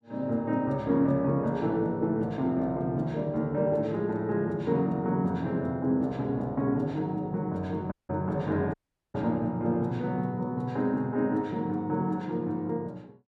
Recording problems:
dropout; at 8 s and at 8.5 s

